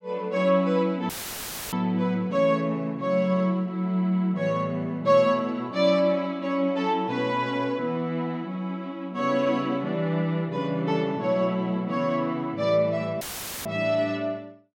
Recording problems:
dropout; at 1 s for 0.5 s and at 13 s; filled with static

